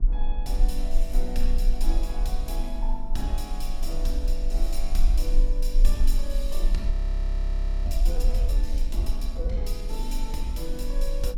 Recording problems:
electrical hum; 50 Hz, harmonics up to 750 Hz, SNR 11 dB
low-frequency rumble; below 36 Hz, strongest tone 24 Hz, SNR -6 dB
frozen audio; at 7 s for 1 s

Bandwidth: 17 kHz